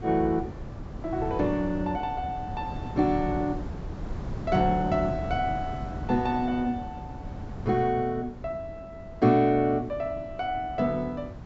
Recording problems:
treble cut off; nothing above 8 kHz
wind on the microphone; below 240 Hz, SNR 11 dB

